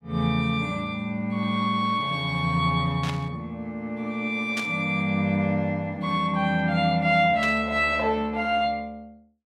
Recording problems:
static burst; at 3 s, at 4.5 s and at 7.5 s; peak -5 dB vs average level

